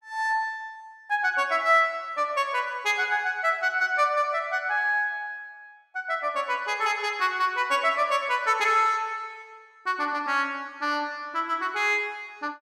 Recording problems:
none

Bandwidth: 14.5 kHz